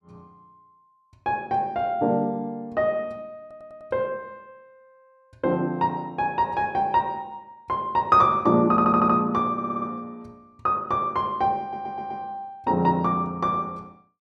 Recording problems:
audio stuttering; 4 times, first at 3.5 s

